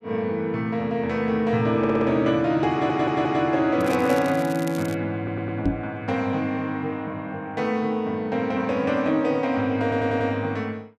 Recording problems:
stutter; 4 times, first at 2 s
crackling; from 4 to 5 s; loose cable, SNR 18 dB
microphone bump; at 5.5 s; peak +4 dB vs average level

